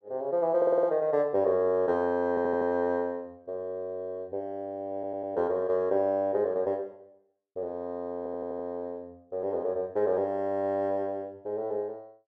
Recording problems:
audio stuttering; 4 times, first at 0.5 s

